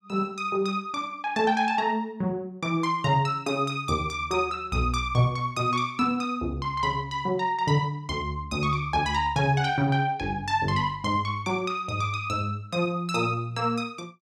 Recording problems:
none

